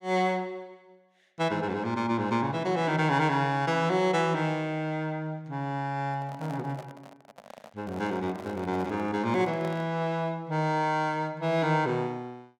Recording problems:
microphone handling noise; from 6 to 10 s; peak -9 dB vs average level

